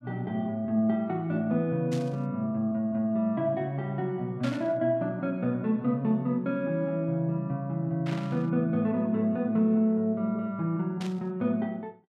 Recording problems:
burst of static; 4 times, first at 2 s; peak -8 dB vs average level

